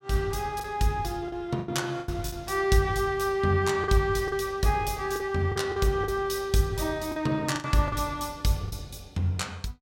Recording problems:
lost packets; 7% of the sound replaced, filled with the last packet

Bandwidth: 16.5 kHz